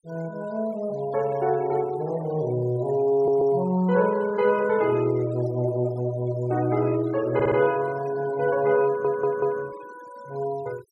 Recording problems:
denoising artefacts; signal-to-artefact ratio 22 dB
audio stuttering; at 3 s, at 7.5 s and at 9 s

